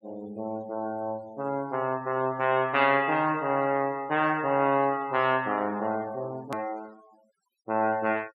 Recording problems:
noise reduction artefacts; signal-to-artefact ratio 24 dB
hard cut with a click; at 6.5 s

